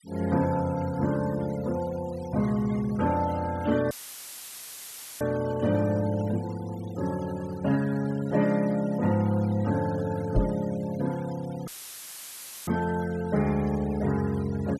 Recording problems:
denoising artefacts; signal-to-artefact ratio 19 dB
dropout; at 4 s for 1.5 s and at 12 s for 1 s; filled with static
knock on the microphone; at 10 s; peak +7 dB vs average level

